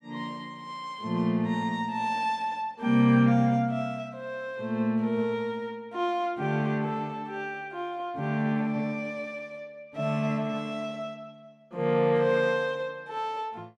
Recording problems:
none

